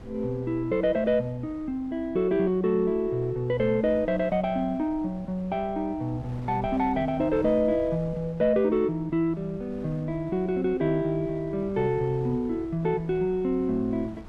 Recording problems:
wind noise; below 280 Hz, SNR 19 dB

